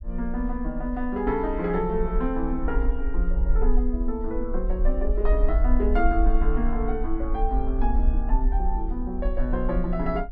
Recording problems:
rumble; below 46 Hz, SNR 0 dB

